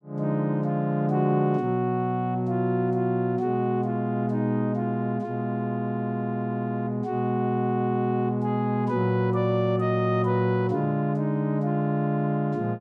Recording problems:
none

